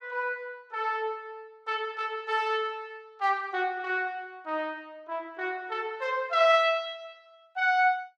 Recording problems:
none

